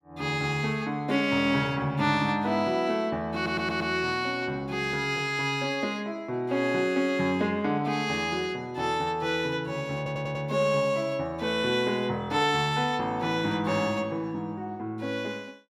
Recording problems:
audio stuttering; at 3.5 s and at 10 s

